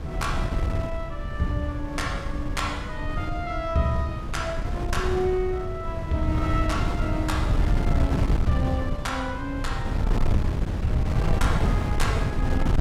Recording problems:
wind noise; below 140 Hz, SNR -2 dB

